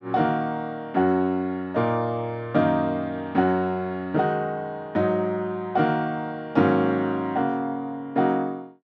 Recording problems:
none

